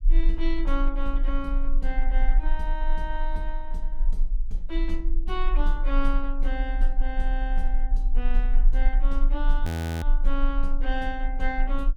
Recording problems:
low-frequency rumble; below 34 Hz, strongest tone 20 Hz, SNR -6 dB
audio freezing; at 9.5 s

